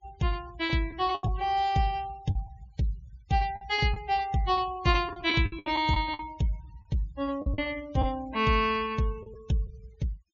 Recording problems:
treble missing; nothing above 7.1 kHz
denoising artefacts; signal-to-artefact ratio 23 dB
lost packets; 7% of the sound replaced, filled with the last packet

